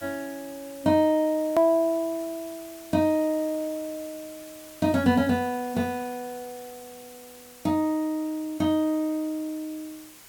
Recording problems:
background hiss; slope -1 dB per octave, SNR 20 dB
hard cut with a click; at 1.5 s

